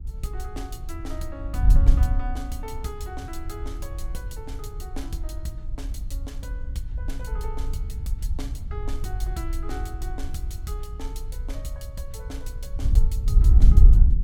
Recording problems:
wind noise; below 64 Hz, SNR -12 dB

